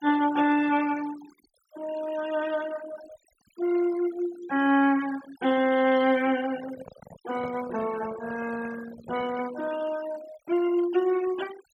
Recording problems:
noise reduction artefacts; signal-to-artefact ratio 16 dB
handling noise; from 6.5 to 9.5 s; peak -9 dB vs average level

